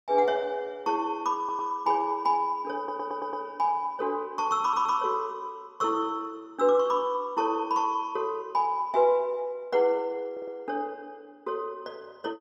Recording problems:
audio stuttering; 4 times, first at 1.5 s

